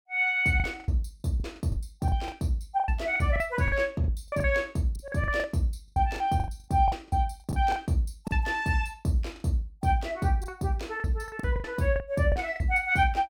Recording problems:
lost packets; 13% of the sound replaced, filled with the last packet

